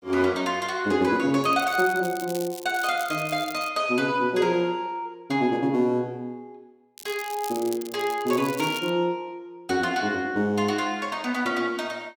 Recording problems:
crackle; from 1.5 to 3.5 s and from 7 to 9 s; loose cable, SNR 15 dB

